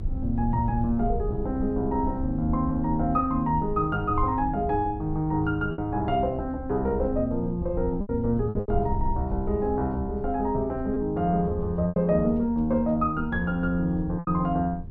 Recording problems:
low-frequency rumble; below 78 Hz, SNR 10 dB
lost packets; 3% of the sound replaced, filled with repeated pitch periods

